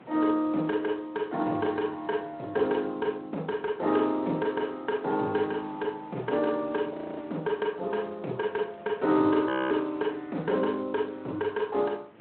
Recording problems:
telephone audio; 190 Hz to 3.6 kHz, Speex
wind noise; below 1.3 kHz, SNR 24 dB
audio freezing; at 7 s and at 9.5 s

